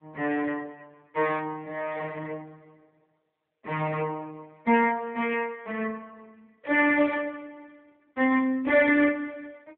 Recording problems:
telephone audio; 220 Hz to 3.2 kHz, AMR-NB

